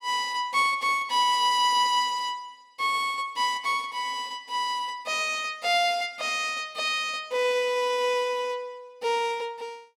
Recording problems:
none

